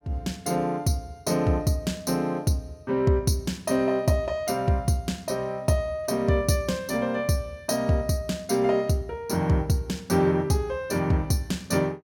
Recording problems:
none

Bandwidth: 17.5 kHz